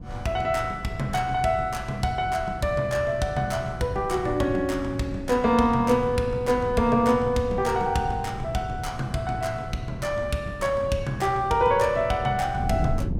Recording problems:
wind noise; below 170 Hz, SNR 12 dB

